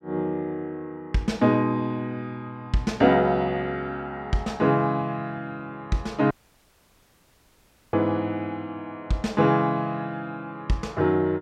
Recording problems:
audio cutting out; at 6.5 s for 1.5 s

